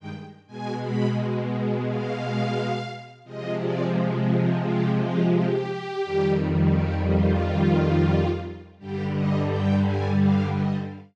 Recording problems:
none

